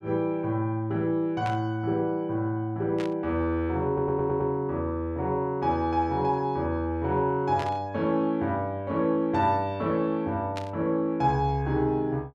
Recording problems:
static burst; 4 times, first at 1.5 s; peak -7 dB vs average level
audio stuttering; at 4 s

